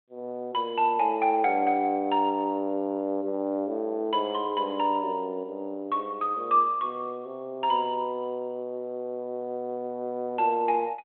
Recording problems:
phone line; 260 Hz to 3.2 kHz, G.726

